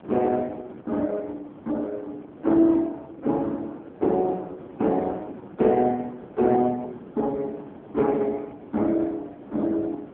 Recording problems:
phone line; 220 Hz to 2.6 kHz, AMR-NB
wind noise; below 540 Hz, SNR 18 dB

